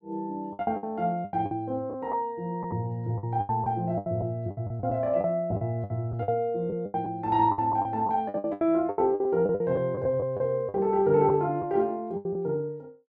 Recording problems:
packet loss; 14% of the sound replaced, filled with the last packet

